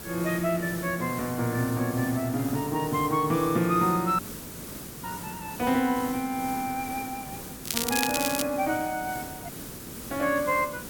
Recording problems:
hiss; SNR 10 dB
audio cutting out; at 4 s for 1 s and at 9.5 s for 0.5 s
crackling; at 7.5 s; loose cable, SNR 2 dB

